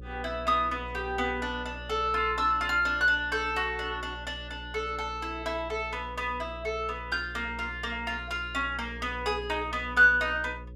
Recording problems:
hum; 60 Hz, harmonics up to 540 Hz, SNR 15 dB

